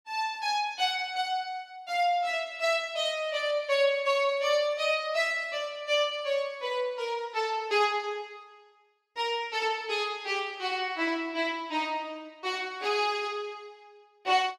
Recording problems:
none

